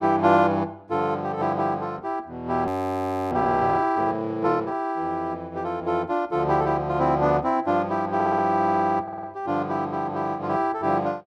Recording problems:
audio freezing; at 2.5 s for 0.5 s
audio stuttering; at 8 s and at 9 s

